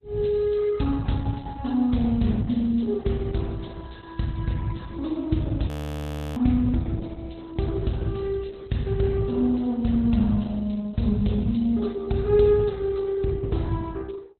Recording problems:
lossy codec; Opus, log-spectral distance 3 dB, nothing above 14.7 kHz
audio freezing; at 5.5 s for 0.5 s

